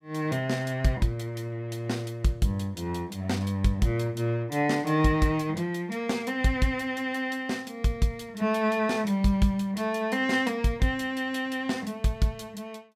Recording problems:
none

